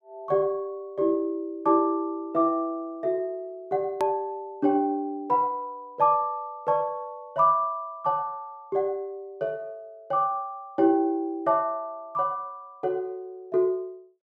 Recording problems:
click at an edit; at 4 s

